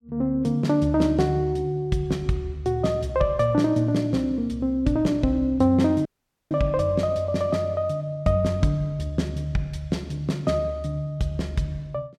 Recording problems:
audio cutting out; at 6 s

